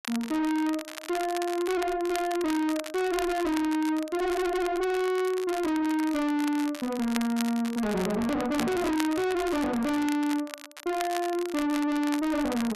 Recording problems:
distortion; soft clipping, signal-to-distortion ratio 6 dB
crackle; vinyl, SNR 12 dB

